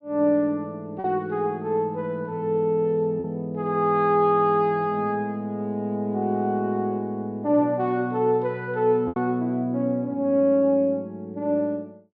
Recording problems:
treble cut off; nothing above 5.5 kHz
packet loss; 1.3% of the sound replaced, filled with repeated pitch periods

